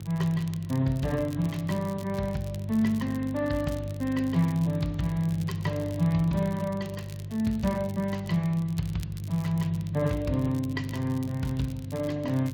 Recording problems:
lossy compression; MP3, then Speex, log-spectral distance 2 dB, nothing above 17.7 kHz
electrical hum; 50 Hz, harmonics up to 350 Hz, SNR 8 dB
crackle; vinyl, SNR 21 dB

